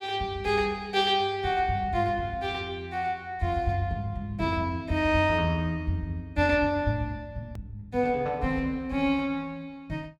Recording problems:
click at an edit; at 7.5 s

